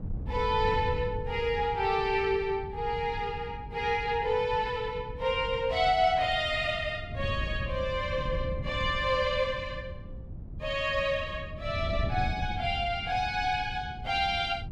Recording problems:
wind on the microphone; below 130 Hz, SNR 10 dB

